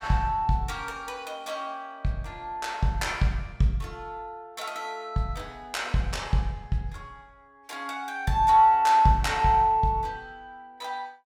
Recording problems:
none

